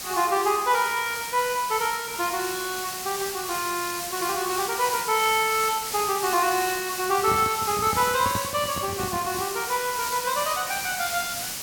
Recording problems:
hiss; slope +1 dB per octave, SNR 5 dB
handling noise; from 7 to 9.5 s; peak -2 dB vs average level

